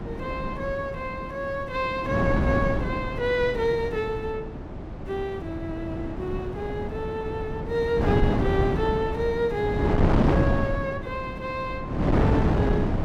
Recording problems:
wind noise; below 360 Hz, SNR -1 dB

